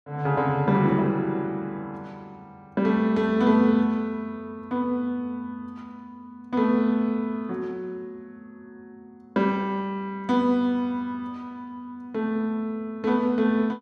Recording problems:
none

